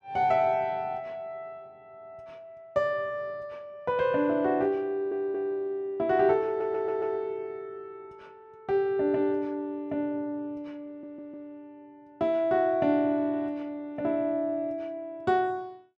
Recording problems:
audio stuttering; at 5 s, at 6.5 s and at 11 s

